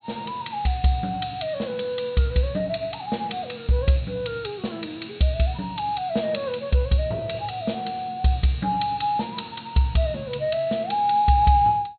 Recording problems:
low-pass filter; nothing above 4.3 kHz

